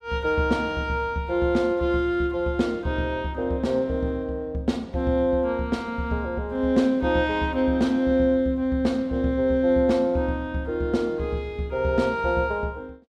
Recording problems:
none

